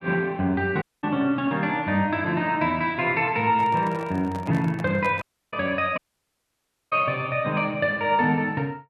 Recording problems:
dropout; at 1 s, at 5 s and at 6 s for 1 s
microphone handling noise; from 3.5 to 5.5 s; peak -8 dB vs average level

